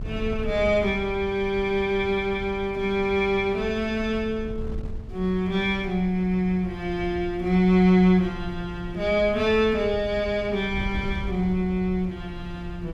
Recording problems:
wind on the microphone; below 100 Hz, SNR 14 dB

